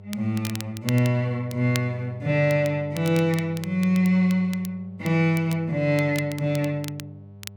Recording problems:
hum; 50 Hz, harmonics up to 700 Hz, SNR 19 dB
crackle; vinyl, SNR 17 dB

